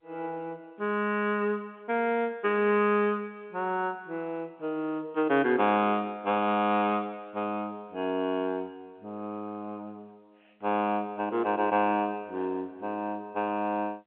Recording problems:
phone line; 220 Hz to 3.3 kHz, G.711

